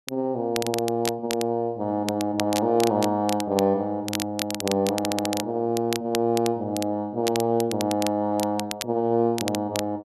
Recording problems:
crackle; vinyl, SNR 9 dB
audio stuttering; at 5 s

